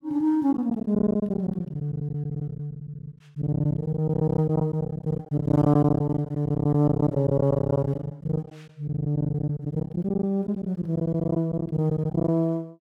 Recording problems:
lost packets; 17% of the sound replaced, filled with silence

